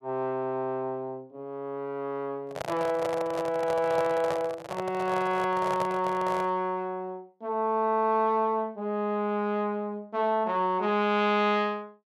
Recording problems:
microphone handling noise; from 2.5 to 6.5 s; peak -1 dB vs average level

